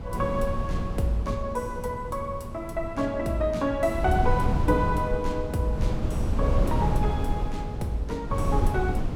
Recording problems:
wind on the microphone; below 140 Hz, SNR 1 dB

